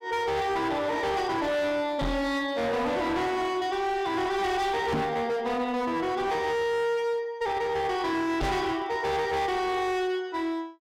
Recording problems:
distorted audio; hard clipping, signal-to-distortion ratio 8 dB
microphone bump; at 2 s, at 5 s and at 8.5 s; peak +3 dB vs average level

